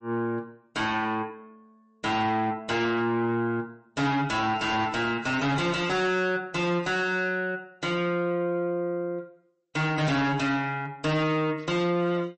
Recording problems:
lossy compression; MP3, log-spectral distance 2 dB, nothing above 8.2 kHz
distorted audio; soft clipping, signal-to-distortion ratio 6 dB

